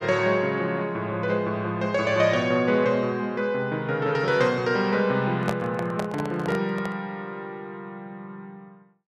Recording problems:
microphone handling noise; from 5.5 to 7 s; peak +1 dB vs average level

